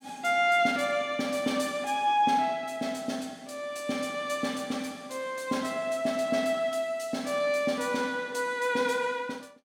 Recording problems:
none

